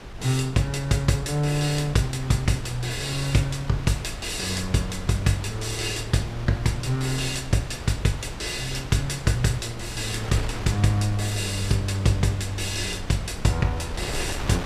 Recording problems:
hum; 60 Hz, harmonics up to 900 Hz, SNR 24 dB
wind noise; below 670 Hz, SNR 11 dB

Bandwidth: 15 kHz